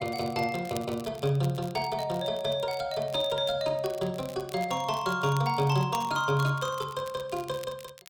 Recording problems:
crackle; vinyl, SNR 19 dB

